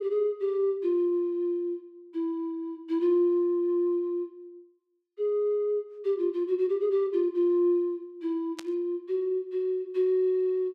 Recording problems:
burst of static; at 8.5 s; peak -8 dB vs average level

